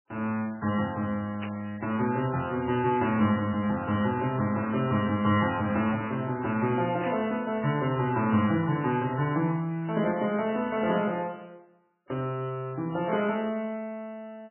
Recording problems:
lossy codec; MP3, log-spectral distance 3 dB, nothing above 2.7 kHz
static burst; at 1.5 s, at 7 s and at 9 s; peak -8 dB vs average level

